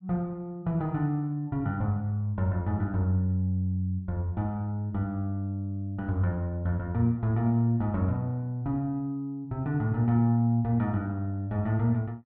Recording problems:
treble cut off; nothing above 4.4 kHz

